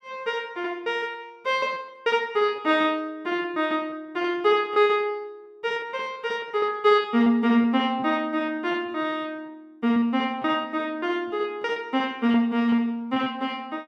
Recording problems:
lost packets; 10% of the sound replaced, filled with repeated pitch periods

